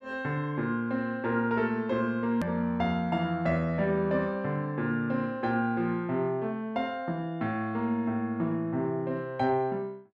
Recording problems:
hard cut with a click; at 2.5 s

